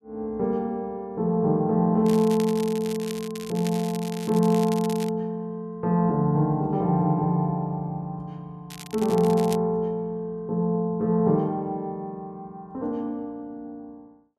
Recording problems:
crackle; from 2 to 5 s and at 8.5 s; loose cable, SNR 16 dB

